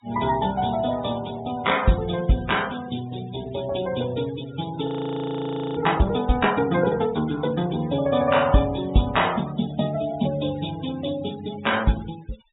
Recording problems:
treble missing; nothing above 4 kHz
denoising artefacts; signal-to-artefact ratio 16 dB
frozen audio; at 5 s for 1 s

